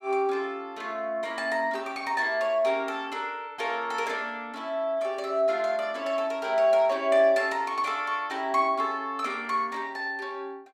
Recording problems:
none

